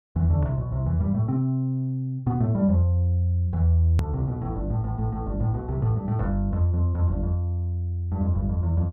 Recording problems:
click at an edit; at 4 s

